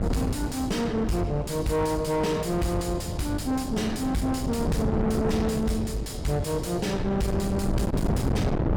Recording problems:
distortion; soft clipping, signal-to-distortion ratio 7 dB
wind noise; below 360 Hz, SNR 3 dB

